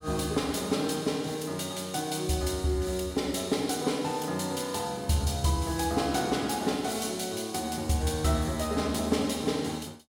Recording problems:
none

